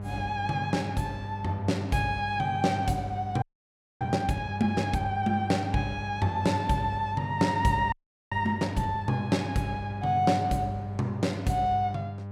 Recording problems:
mains hum; 50 Hz, harmonics up to 1 kHz, SNR 8 dB
frozen audio; at 3.5 s for 0.5 s and at 8 s

